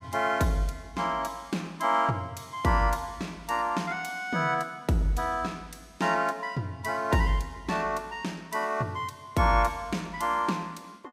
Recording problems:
none

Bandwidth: 15.5 kHz